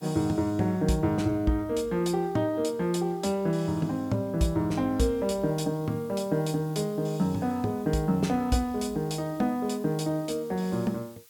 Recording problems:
background hiss; slope +3 dB per octave, SNR 27 dB

